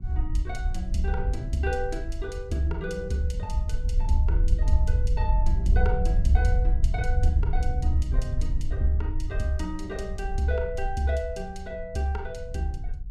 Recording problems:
low-frequency rumble; below 66 Hz, SNR -2 dB

